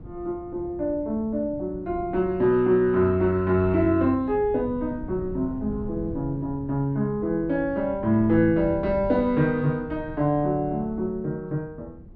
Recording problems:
wind noise; below 190 Hz, SNR 16 dB

